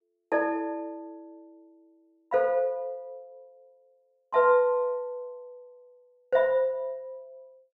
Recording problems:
none

